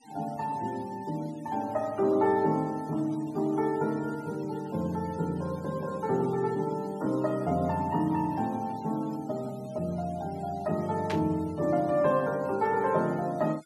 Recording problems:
denoising artefacts; signal-to-artefact ratio 23 dB
static burst; at 11 s; peak -3 dB vs average level

